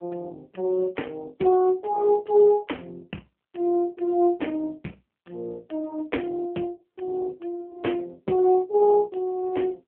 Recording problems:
telephone audio; 220 Hz to 3.2 kHz, AMR-NB

